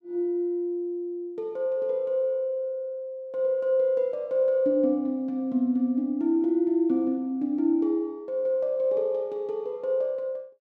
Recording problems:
none

